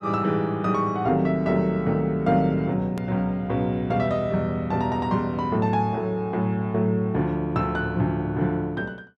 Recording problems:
click at an edit; at 3 s

